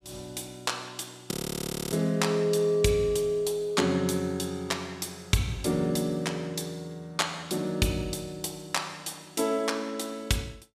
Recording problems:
frozen audio; at 1.5 s for 0.5 s

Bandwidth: 14.5 kHz